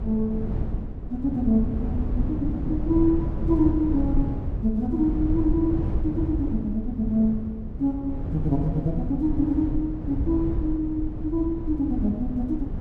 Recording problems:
electrical hum; 50 Hz, harmonics up to 400 Hz, SNR 20 dB
low-frequency rumble; below 130 Hz, SNR 4 dB

